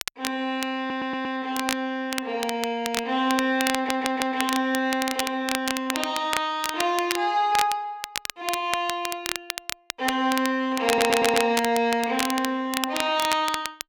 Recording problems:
crackle; vinyl, SNR 6 dB
stutter; at 1 s, at 3.5 s and at 11 s

